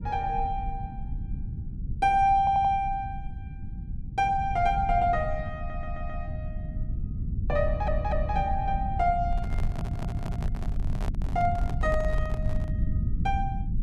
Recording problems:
low-frequency rumble; below 110 Hz, SNR 5 dB
audio stuttering; 4 times, first at 2.5 s
handling noise; from 9.5 to 13 s; peak -9 dB vs average level

